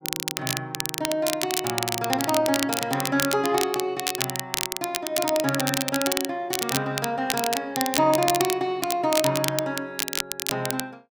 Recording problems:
crackle; vinyl, SNR 2 dB

